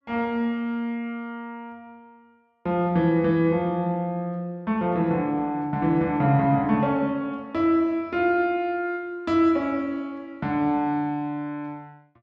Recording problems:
none

